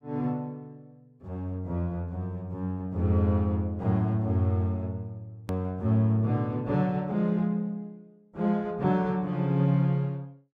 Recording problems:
hard cut with a click; at 5.5 s

